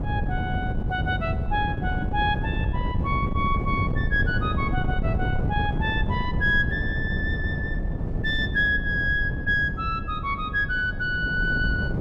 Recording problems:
wind on the microphone; below 180 Hz, SNR 2 dB

